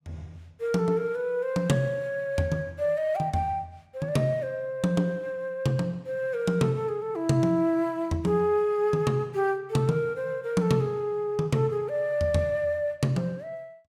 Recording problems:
none

